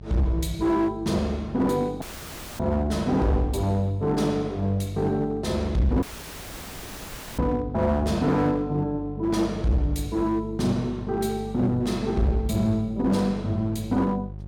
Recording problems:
distortion; hard clipping, uneven, signal-to-distortion ratio 10 dB
hum; 50 Hz, harmonics up to 550 Hz, SNR 14 dB
audio cutting out; at 2 s for 0.5 s and at 6 s for 1.5 s

